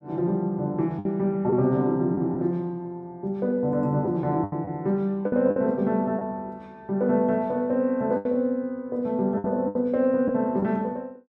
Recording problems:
lost packets; 5% of the sound replaced, filled with the last packet

